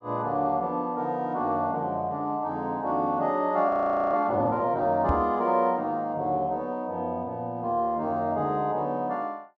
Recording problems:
frozen audio; at 3.5 s
knock on the microphone; at 5 s; peak +2 dB vs average level

